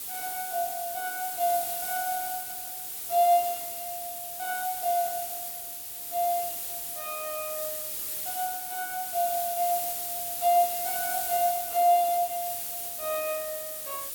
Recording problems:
hiss; SNR 3 dB

